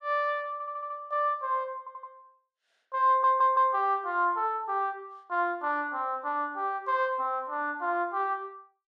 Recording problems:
stutter; at 0.5 s, at 2 s and at 3 s

